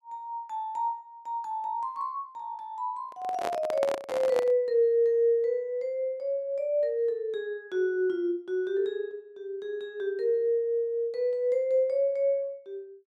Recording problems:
handling noise; from 3 to 4.5 s; peak 0 dB vs average level

